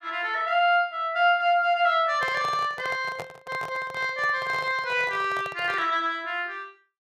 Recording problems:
microphone handling noise; from 2 to 6 s; peak -7 dB vs average level

